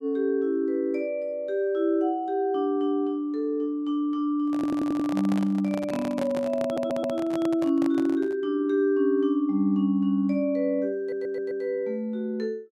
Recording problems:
microphone handling noise; from 4.5 to 8.5 s; peak -5 dB vs average level
stutter; at 4.5 s, at 6.5 s and at 11 s

